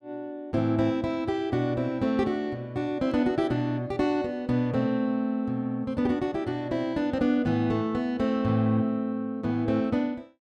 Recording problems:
none

